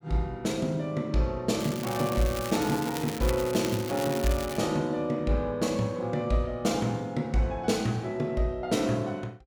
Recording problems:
crackle; from 1.5 to 4.5 s; loose cable, SNR 10 dB

